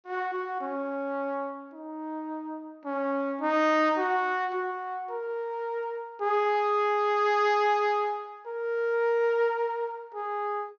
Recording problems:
low-pass filter; nothing above 6.6 kHz

